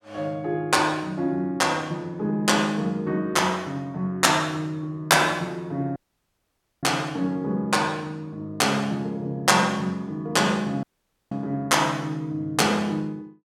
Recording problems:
audio cutting out; at 6 s for 1 s and at 11 s

